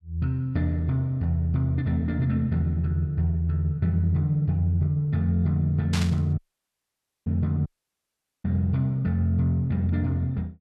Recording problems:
static burst; at 6 s; peak -2 dB vs average level
audio cutting out; at 6.5 s for 1 s and at 7.5 s for 1 s

